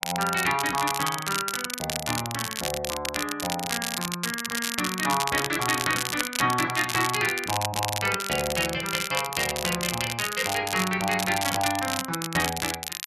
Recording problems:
crackling; vinyl, SNR 2 dB

